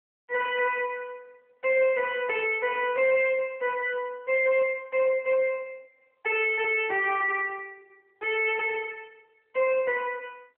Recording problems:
telephone audio; 280 Hz to 3.1 kHz, AMR-NB
distorted audio; soft clipping, signal-to-distortion ratio 10 dB

